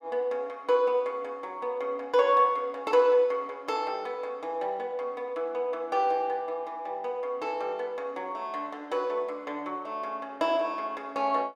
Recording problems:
none

